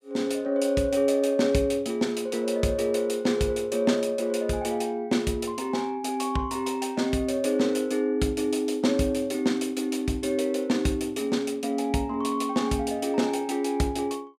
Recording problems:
none

